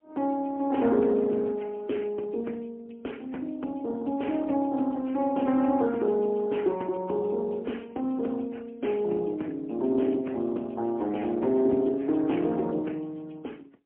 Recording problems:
telephone audio; 190 Hz to 3.1 kHz, AMR-NB, then MP3

